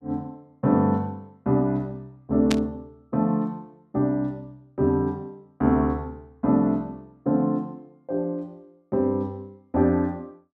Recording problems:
static burst; at 2.5 s; peak +1 dB vs average level

